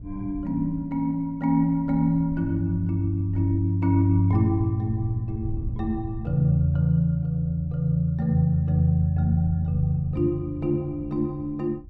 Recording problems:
wind on the microphone; below 110 Hz, SNR 16 dB

